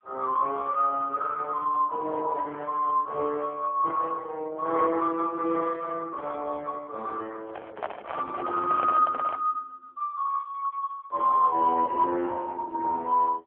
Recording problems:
telephone audio; 300 Hz to 3.5 kHz, AMR-NB
handling noise; from 7.5 to 9.5 s; peak -3 dB vs average level

